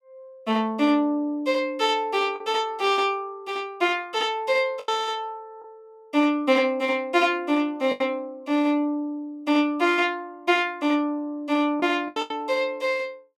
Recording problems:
packet loss; 3% of the sound replaced, filled with the last packet

